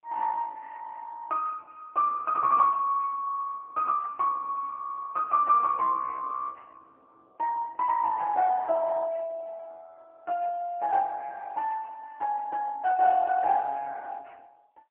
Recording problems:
telephone audio; 370 Hz to 2.3 kHz, AMR-NB

